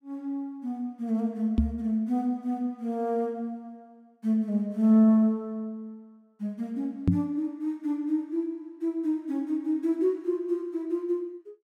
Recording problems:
knock on the microphone; at 1.5 s and at 7 s; peak +9 dB vs average level

